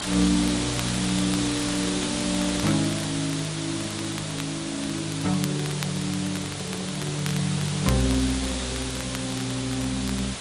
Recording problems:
codec artefacts; MP3, log-spectral distance 13 dB
background hiss; slope -1 dB per octave, SNR 3 dB
crackling; vinyl, SNR 14 dB
microphone handling noise; from 5.5 to 8.5 s; peak -7 dB vs average level

